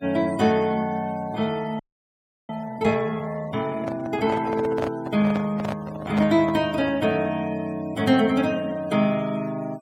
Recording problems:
noise reduction artefacts; signal-to-artefact ratio 22 dB
frozen audio; at 2 s for 0.5 s
handling noise; from 4 to 7.5 s; peak -1 dB vs average level

